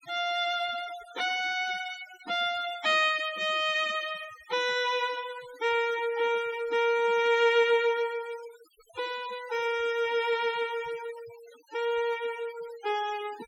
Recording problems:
denoising artefacts; signal-to-artefact ratio 18 dB

